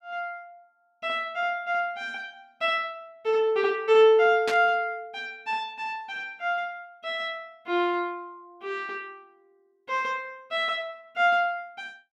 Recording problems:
static burst; at 4.5 s; peak -1 dB vs average level

